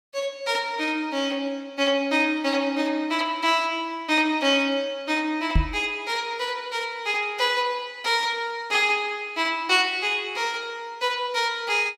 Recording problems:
knock on the microphone; at 5.5 s; peak +6 dB vs average level

